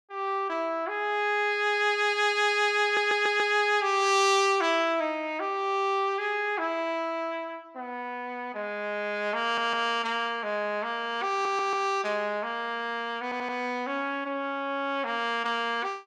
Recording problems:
audio stuttering; 4 times, first at 3 s

